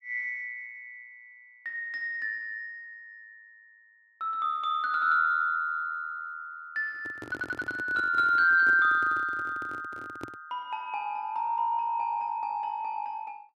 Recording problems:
handling noise; from 7 to 10 s; peak -7 dB vs average level
stutter; at 7.5 s

